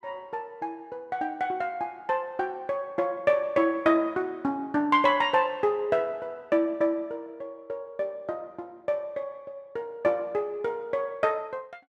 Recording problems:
none

